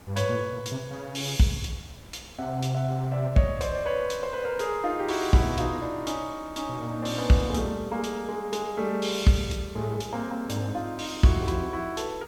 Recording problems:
hiss; slope -4 dB per octave, SNR 26 dB
wind on the microphone; below 940 Hz, SNR 24 dB

